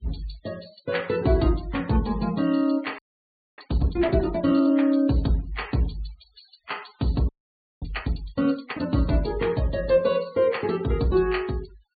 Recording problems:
treble missing; nothing above 4.5 kHz
noise reduction artefacts; signal-to-artefact ratio 25 dB
frozen audio; at 3 s for 0.5 s and at 7.5 s for 0.5 s

